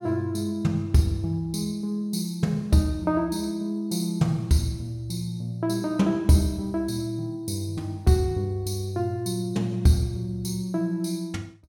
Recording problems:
none

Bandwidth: 17 kHz